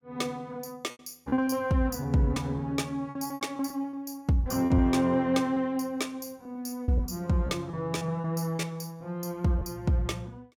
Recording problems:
packet loss; 8% of the sound replaced, filled with repeated pitch periods

